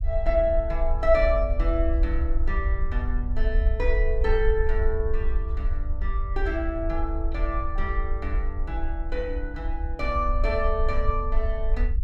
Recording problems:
rumble; below 56 Hz, SNR 0 dB

